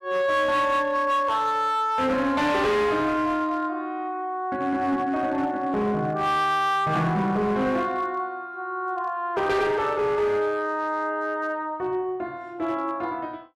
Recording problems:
distortion; hard clipping, signal-to-distortion ratio 11 dB

